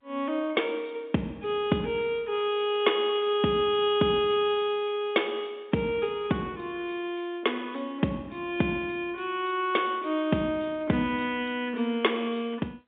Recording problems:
telephone audio; 150 Hz to 3.6 kHz, G.711

